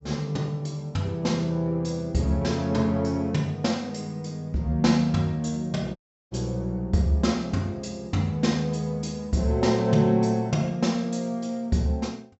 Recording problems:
low-pass filter; nothing above 7.7 kHz
dropout; at 6 s

